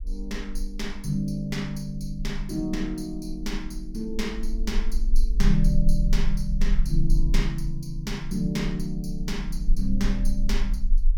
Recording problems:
low-frequency rumble; below 36 Hz, strongest tone 20 Hz, SNR 1 dB

